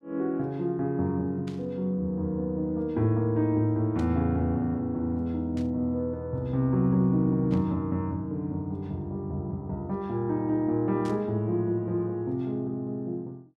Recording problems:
burst of static; 5 times, first at 1.5 s; peak -14 dB vs average level

